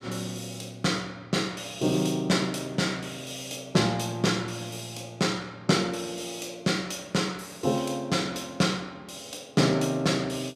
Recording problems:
none

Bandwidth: 15 kHz